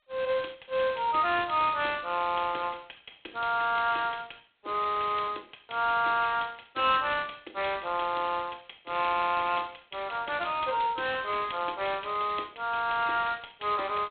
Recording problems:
phone line; 320 Hz to 3.9 kHz, G.726

